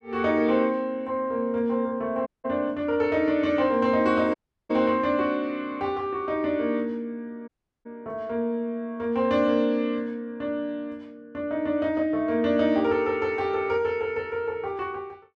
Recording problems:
audio cutting out; at 2.5 s, at 4.5 s and at 7.5 s

